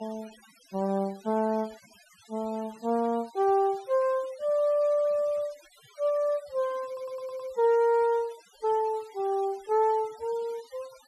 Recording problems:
noise reduction artefacts; signal-to-artefact ratio 24 dB
stutter; at 7 s

